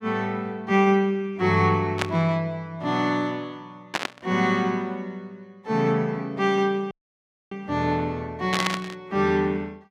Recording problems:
static burst; at 2 s, at 4 s and at 8.5 s; peak +4 dB vs average level
audio cutting out; at 7 s for 0.5 s

